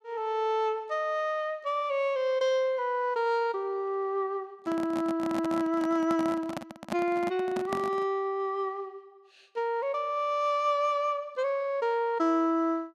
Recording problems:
microphone handling noise; from 4.5 to 8 s; peak 0 dB vs average level

